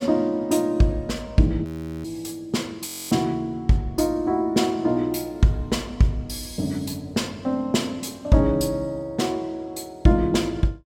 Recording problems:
frozen audio; at 1.5 s and at 3 s

